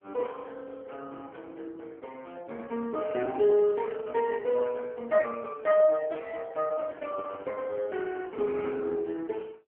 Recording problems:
telephone audio; 260 Hz to 2.3 kHz, AMR-NB
handling noise; from 5.5 to 8.5 s; peak -14 dB vs average level

